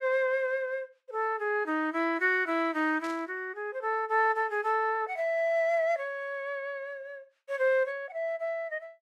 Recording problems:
burst of static; at 3 s; peak -13 dB vs average level

